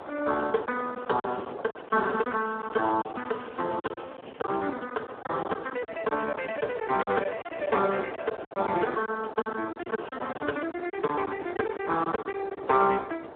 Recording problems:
phone line; 240 Hz to 3 kHz, Speex
background hiss; SNR 41 dB
wind noise; below 900 Hz, SNR 14 dB
packet loss; 10% of the sound replaced, filled with silence
crackle; at 1.5 s, from 2 to 4.5 s and at 10 s; loose cable, SNR 27 dB

